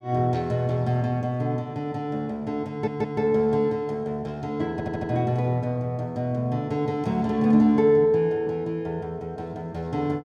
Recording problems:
audio stuttering; at 2.5 s and at 4.5 s

